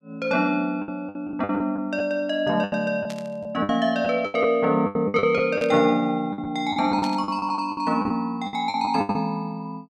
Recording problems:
packet loss; 14% of the sound replaced, filled with the last packet
static burst; at 3 s, at 5.5 s and at 7 s; peak -9 dB vs average level

